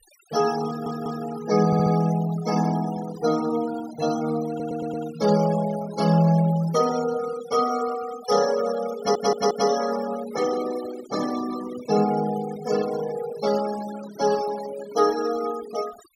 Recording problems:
denoising artefacts; signal-to-artefact ratio 14 dB
audio stuttering; 4 times, first at 0.5 s

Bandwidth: 16 kHz